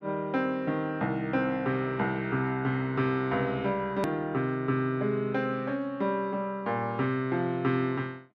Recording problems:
hard cut with a click; at 4 s

